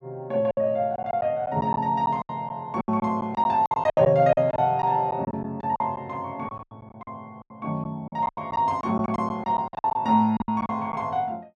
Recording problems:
packet loss; 14% of the sound replaced, filled with silence

